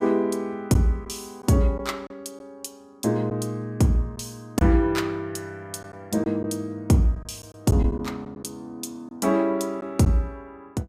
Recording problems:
packet loss; 3% of the sound replaced, filled with silence

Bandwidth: 15.5 kHz